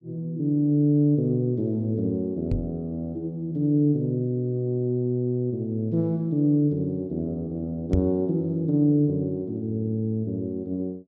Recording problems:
microphone thump; at 2.5 s and at 8 s; peak +4 dB vs average level

